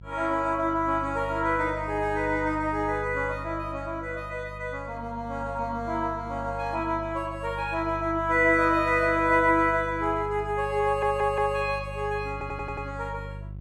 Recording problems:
electrical hum; 50 Hz, harmonics up to 400 Hz, SNR 13 dB
audio stuttering; at 11 s and at 12 s

